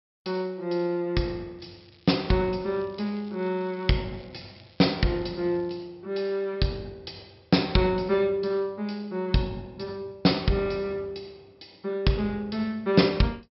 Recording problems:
treble missing; nothing above 5.4 kHz
crackle; from 1.5 to 6 s; loose cable, SNR 29 dB

